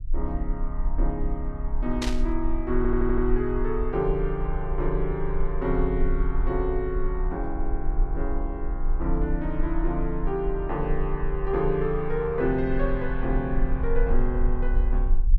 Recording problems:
low-frequency rumble; below 40 Hz, strongest tone 20 Hz, SNR 2 dB
burst of static; at 2 s; peak +1 dB vs average level
stutter; at 3 s

